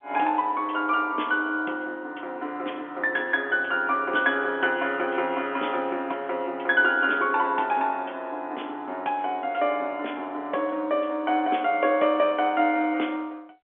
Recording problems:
telephone audio; 260 Hz to 3.4 kHz, G.711

